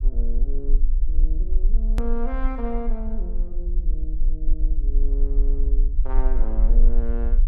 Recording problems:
low-frequency rumble; below 38 Hz, strongest tone 24 Hz, SNR -11 dB
click at an edit; at 2 s

